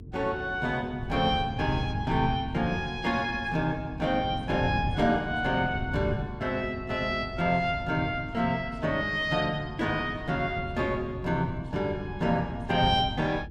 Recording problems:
hum; 50 Hz, harmonics up to 450 Hz, SNR 19 dB
wind noise; below 150 Hz, SNR 10 dB

